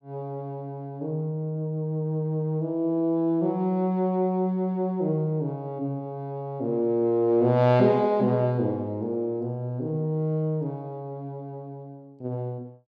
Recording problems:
none

